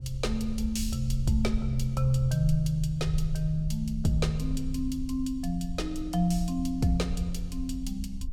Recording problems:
wind on the microphone; below 62 Hz, SNR 7 dB

